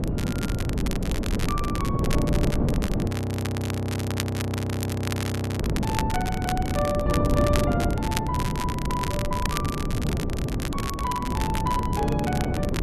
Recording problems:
wind noise; below 290 Hz, SNR -3 dB
crackling; vinyl, SNR 5 dB
audio freezing; at 3 s for 2.5 s

